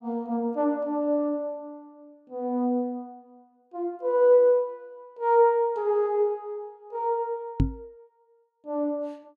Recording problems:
microphone bump; at 7.5 s; peak +5 dB vs average level

